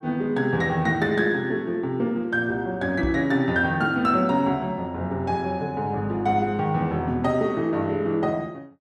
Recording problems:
microphone thump; at 3 s; peak -2 dB vs average level

